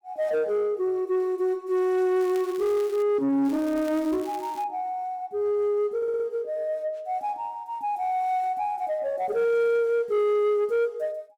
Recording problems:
distortion; soft clipping, signal-to-distortion ratio 12 dB
crackling; at 2 s and from 3.5 to 4.5 s; loose cable, SNR 22 dB
stutter; at 6 s

